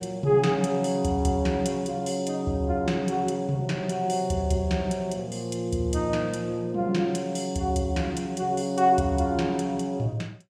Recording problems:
none

